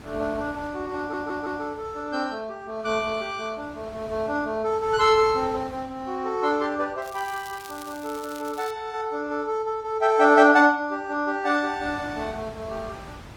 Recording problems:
codec artefacts; Opus, log-spectral distance 3 dB
wind noise; below 1.4 kHz, SNR 20 dB
audio stuttering; at 1 s
crackle; from 7 to 8.5 s; loose cable, SNR 21 dB

